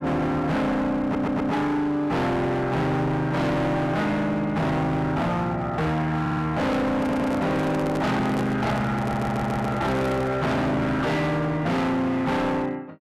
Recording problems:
distorted audio; hard clipping, uneven, signal-to-distortion ratio 6 dB
stutter; 4 times, first at 1 s
microphone handling noise; from 6.5 to 10 s; peak -1 dB vs average level

